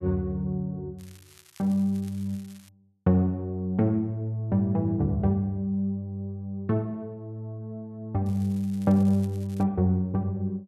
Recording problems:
crackling; from 1 to 2.5 s and from 8.5 to 9.5 s; loose cable, SNR 26 dB

